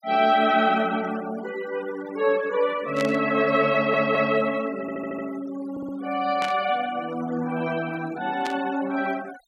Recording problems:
noise reduction artefacts; signal-to-artefact ratio 19 dB
burst of static; at 3 s, at 6.5 s and at 8.5 s; peak -4 dB vs average level
audio stuttering; at 3.5 s, at 5 s and at 5.5 s

